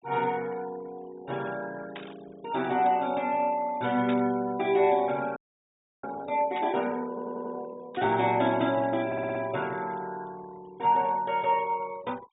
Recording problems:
treble cut off; nothing above 4 kHz
denoising artefacts; signal-to-artefact ratio 23 dB
burst of static; 4 times, first at 2 s; peak -6 dB vs average level
frozen audio; at 5.5 s for 0.5 s
audio stuttering; at 7 s and at 9 s

